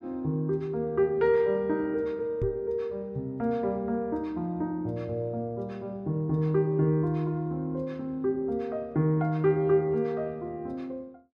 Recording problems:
microphone thump; at 2.5 s; peak 0 dB vs average level

